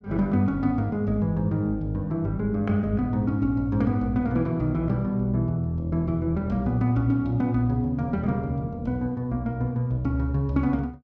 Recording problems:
none

